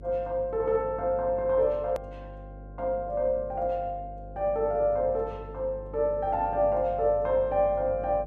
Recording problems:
hum; 50 Hz, harmonics up to 600 Hz, SNR 16 dB
edit click; at 2 s

